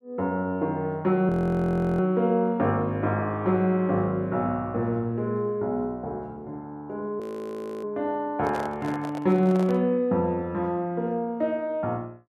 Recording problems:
audio freezing; at 1.5 s for 0.5 s and at 7 s for 0.5 s
handling noise; from 8.5 to 10 s; peak -5 dB vs average level

